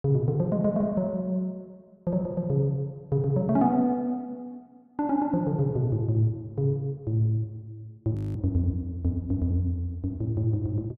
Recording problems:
audio freezing; at 8 s

